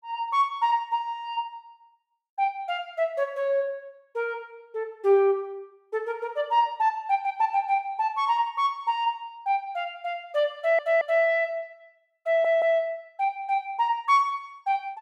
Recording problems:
audio stuttering; at 11 s and at 12 s

